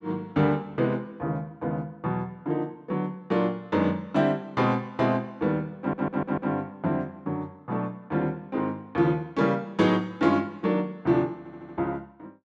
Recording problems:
stutter; at 6 s and at 11 s

